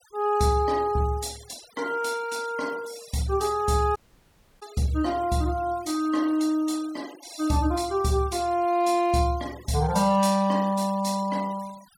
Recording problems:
noise reduction artefacts; signal-to-artefact ratio 21 dB
audio cutting out; at 4 s for 0.5 s

